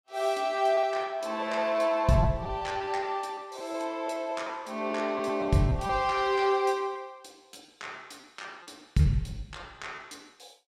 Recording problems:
lost packets; 8% of the sound replaced, filled with repeated pitch periods

